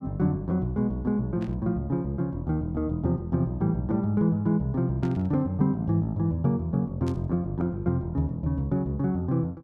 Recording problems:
static burst; at 1.5 s, at 5 s and at 7 s; peak -15 dB vs average level

